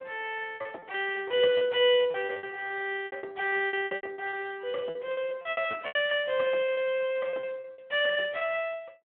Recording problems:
telephone audio; 320 Hz to 3.4 kHz, Speex
packet loss; 19% of the sound replaced, filled with repeated pitch periods

